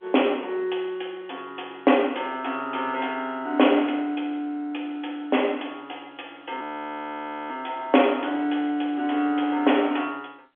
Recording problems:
telephone audio; 260 Hz to 3.4 kHz, G.711
audio freezing; at 6.5 s for 1 s

